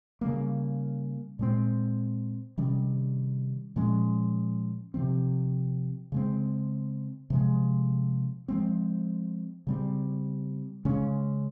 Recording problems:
none

